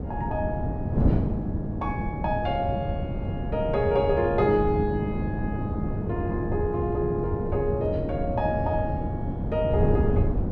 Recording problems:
wind on the microphone; below 240 Hz, SNR 1 dB

